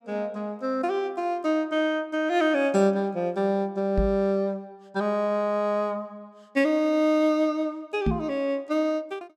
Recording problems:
knock on the microphone; at 4 s and at 8 s; peak +4 dB vs average level

